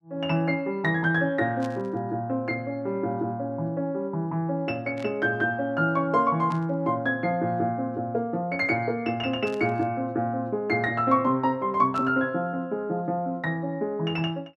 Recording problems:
burst of static; 5 times, first at 1.5 s; peak -13 dB vs average level

